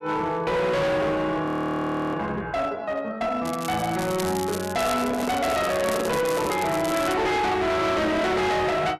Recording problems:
distorted audio; hard clipping, signal-to-distortion ratio 7 dB
frozen audio; at 1.5 s for 0.5 s
crackling; from 3.5 to 7 s; loose cable, SNR 12 dB
handling noise; from 5 to 6.5 s; peak -1 dB vs average level

